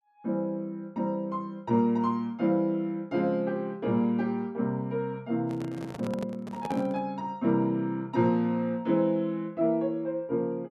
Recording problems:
microphone handling noise; from 5.5 to 7 s; peak -4 dB vs average level

